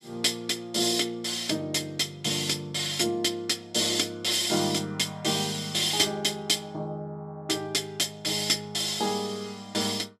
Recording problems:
none

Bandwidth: 14.5 kHz